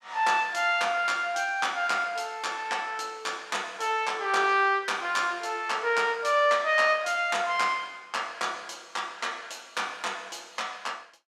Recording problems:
none

